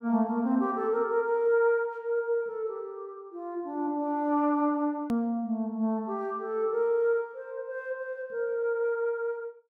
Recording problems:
hard cut with a click; at 5 s

